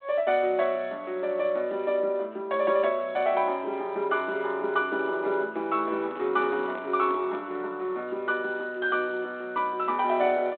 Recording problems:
telephone audio; 280 Hz to 3.9 kHz, G.726
handling noise; from 6 to 7.5 s; peak -10 dB vs average level

